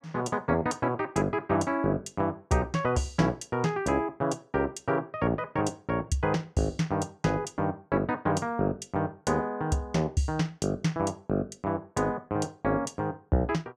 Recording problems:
none

